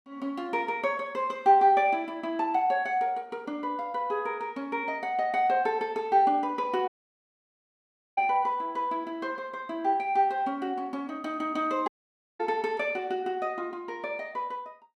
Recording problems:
audio cutting out; at 7 s for 1.5 s and at 12 s for 0.5 s

